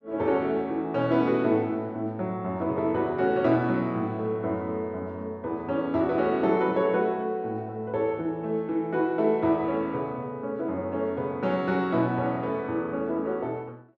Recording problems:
none

